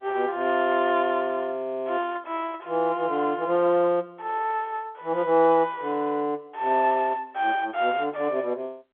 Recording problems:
telephone audio; 220 Hz to 3.4 kHz, G.711

